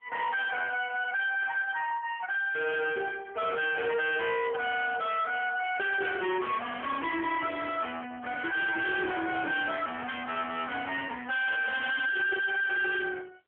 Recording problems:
telephone audio; 300 Hz to 3.1 kHz, AMR-NB
distortion; hard clipping, signal-to-distortion ratio 5 dB
burst of static; at 1.5 s and at 6.5 s; peak -12 dB vs average level

